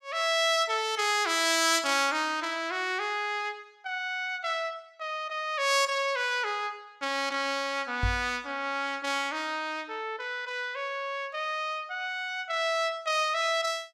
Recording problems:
microphone bump; at 8 s; peak +2 dB vs average level

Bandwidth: 15.5 kHz